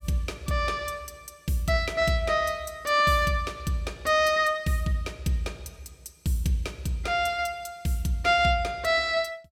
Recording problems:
none

